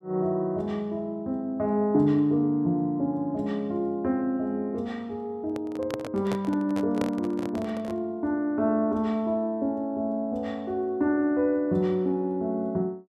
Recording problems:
microphone handling noise; from 5.5 to 8 s; peak -1 dB vs average level

